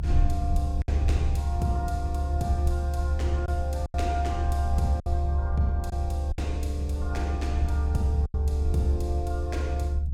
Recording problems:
rumble; below 74 Hz, strongest tone 72 Hz, SNR -6 dB
packet loss; 4% of the sound replaced, filled with silence

